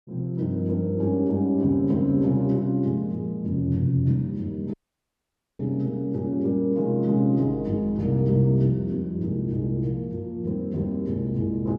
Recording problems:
dropout; at 4.5 s for 1 s

